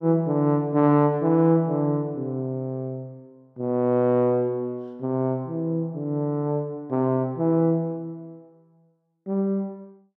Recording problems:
none

